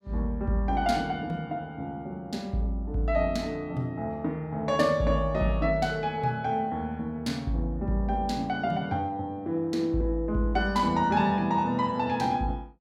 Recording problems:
none

